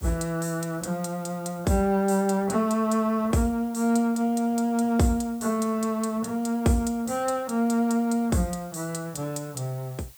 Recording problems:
background hiss; slope +1 dB per octave, SNR 24 dB

